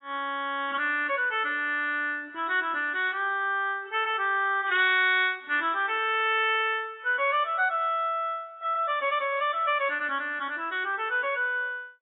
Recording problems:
lossy codec; AAC, log-spectral distance 3 dB, nothing above 3.1 kHz

